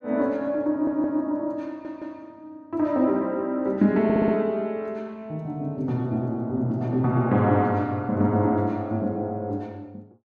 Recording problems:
audio stuttering; at 0.5 s, at 1.5 s and at 4 s

